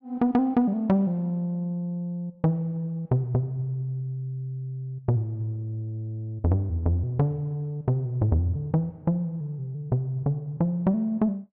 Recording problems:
none

